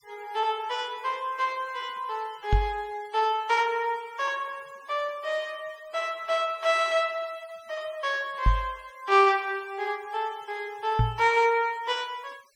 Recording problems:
denoising artefacts; signal-to-artefact ratio 25 dB
knock on the microphone; at 2.5 s, at 8.5 s and at 11 s; peak +7 dB vs average level

